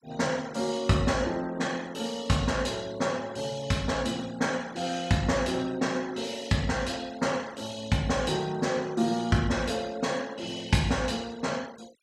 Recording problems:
denoising artefacts; signal-to-artefact ratio 21 dB

